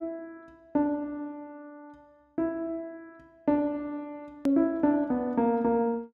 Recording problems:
hard cut with a click; at 4.5 s

